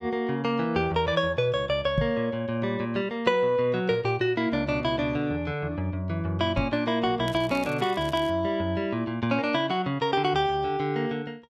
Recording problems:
microphone thump; at 2 s and at 6.5 s; peak +3 dB vs average level
crackle; from 7.5 to 8.5 s; loose cable, SNR 21 dB

